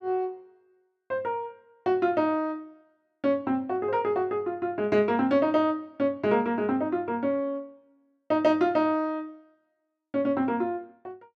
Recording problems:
none

